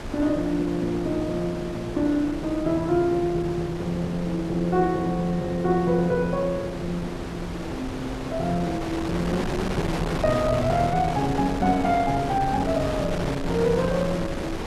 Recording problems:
hum; 50 Hz, harmonics up to 450 Hz, SNR 21 dB
wind noise; below 910 Hz, SNR 7 dB

